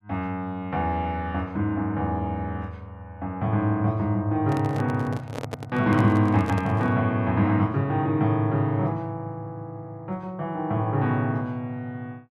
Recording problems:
handling noise; from 4.5 to 7 s; peak -3 dB vs average level

